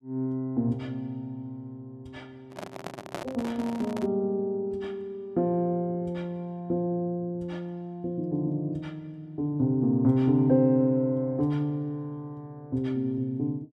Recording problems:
microphone handling noise; from 2.5 to 4 s; peak -2 dB vs average level

